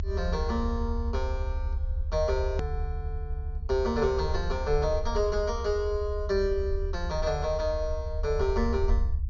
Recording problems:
treble cut off; nothing above 7.2 kHz
rumble; below 76 Hz, SNR 3 dB
hard cut with a click; at 2.5 s

